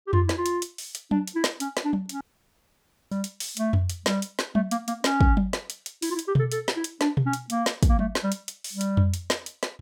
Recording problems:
audio cutting out; at 2 s for 1 s

